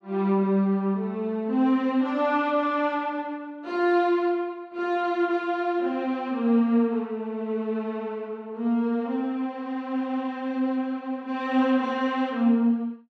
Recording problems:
none

